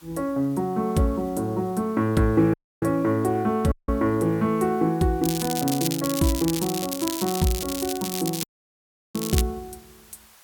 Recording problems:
hiss; SNR 27 dB
audio cutting out; at 2.5 s, at 3.5 s and at 8.5 s for 0.5 s
crackling; from 5 to 9.5 s; loose cable, SNR 6 dB

